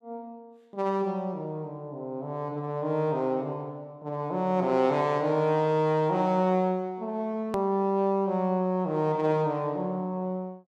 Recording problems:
edit click; at 7.5 s

